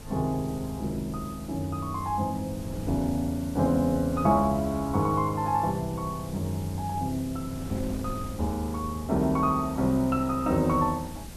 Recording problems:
background hiss; slope +1 dB per octave, SNR 20 dB
wind on the microphone; below 230 Hz, SNR 16 dB

